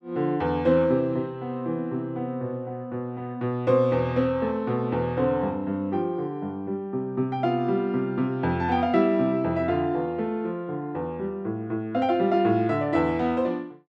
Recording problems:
none

